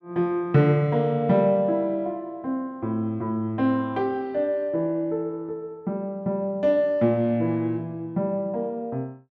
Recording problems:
none

